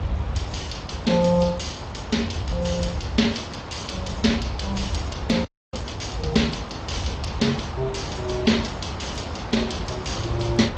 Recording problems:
lossy compression; Speex, then AAC, log-spectral distance 3 dB
background hiss; SNR 9 dB
low-frequency rumble; below 100 Hz, SNR 8 dB
frozen audio; at 5.5 s

